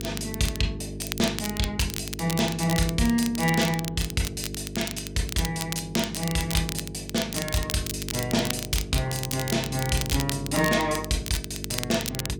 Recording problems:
hum; 50 Hz, harmonics up to 450 Hz, SNR 10 dB
crackling; vinyl, SNR 7 dB

